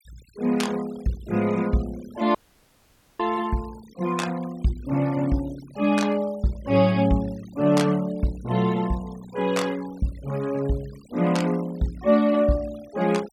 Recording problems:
noise reduction artefacts; signal-to-artefact ratio 22 dB
dropout; at 2.5 s for 1 s

